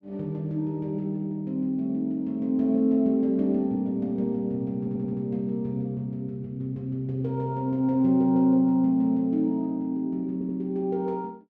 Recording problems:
stutter; at 5 s and at 10 s

